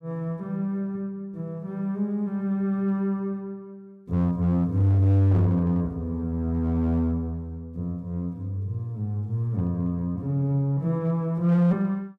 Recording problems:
distorted audio; hard clipping, signal-to-distortion ratio 11 dB

